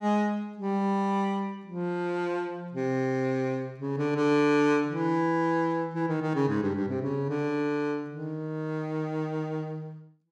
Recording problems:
none

